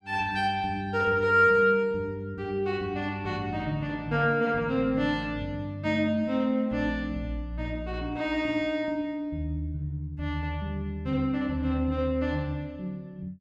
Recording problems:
none

